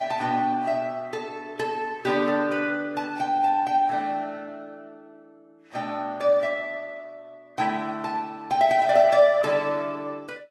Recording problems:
codec artefacts; Vorbis, then Vorbis, log-spectral distance 2 dB, nothing above 12.7 kHz

